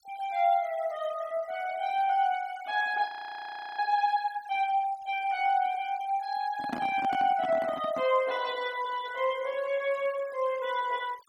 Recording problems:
noise reduction artefacts; signal-to-artefact ratio 21 dB
audio freezing; at 3 s for 0.5 s
microphone handling noise; from 6.5 to 8 s; peak -1 dB vs average level

